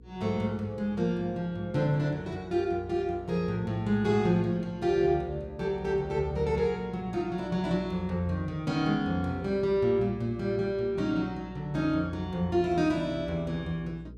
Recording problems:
mains hum; 60 Hz, harmonics up to 480 Hz, SNR 20 dB

